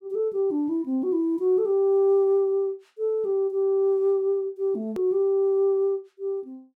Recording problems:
edit click; at 5 s

